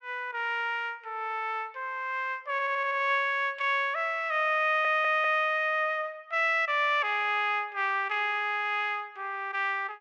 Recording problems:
audio stuttering; at 2.5 s and at 4.5 s

